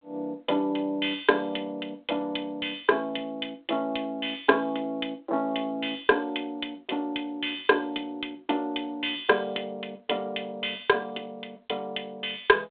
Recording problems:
phone line; 320 Hz to 3.7 kHz, G.726

